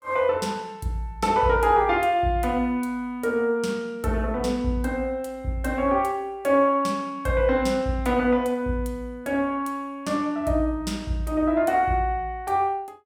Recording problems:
none

